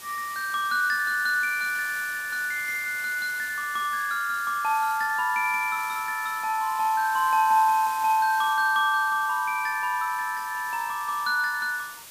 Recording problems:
background hiss; slope 0 dB per octave, SNR 15 dB

